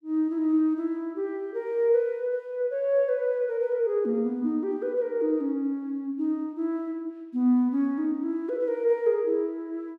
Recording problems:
none

